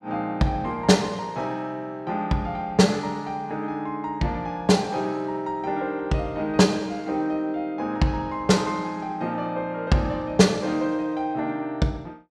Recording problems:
none

